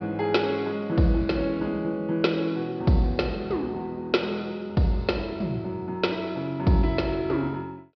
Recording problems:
treble missing; nothing above 5.5 kHz

